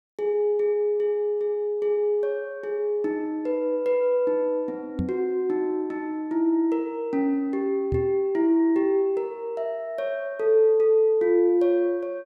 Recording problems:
microphone bump; at 5 s and at 8 s; peak 0 dB vs average level

